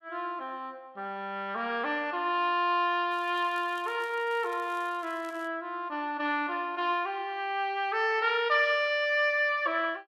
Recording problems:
crackling; from 3 to 5.5 s; loose cable, SNR 27 dB

